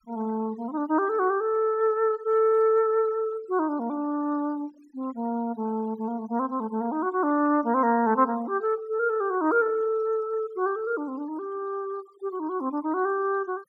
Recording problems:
noise reduction artefacts; signal-to-artefact ratio 25 dB

